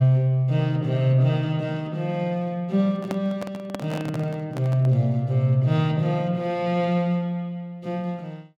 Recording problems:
microphone handling noise; from 3 to 5 s; peak -4 dB vs average level

